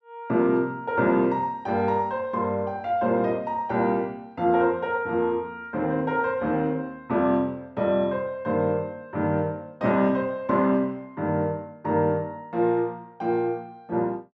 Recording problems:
none

